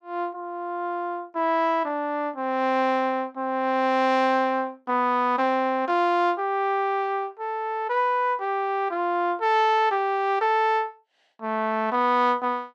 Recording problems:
none

